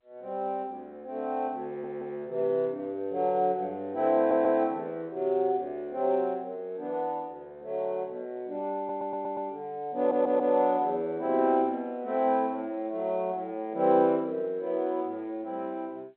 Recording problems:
phone line; 220 Hz to 3.6 kHz, G.711
audio stuttering; 4 times, first at 1.5 s

